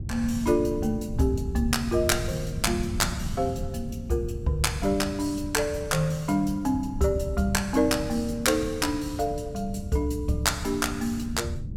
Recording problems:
wind noise; below 140 Hz, SNR 9 dB

